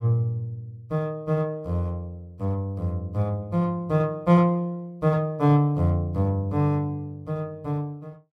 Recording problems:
none

